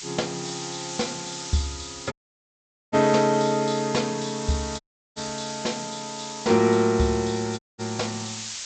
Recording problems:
treble cut off; nothing above 8 kHz
hiss; slope +5 dB per octave, SNR 10 dB
audio cutting out; at 2 s for 1 s, at 5 s and at 7.5 s

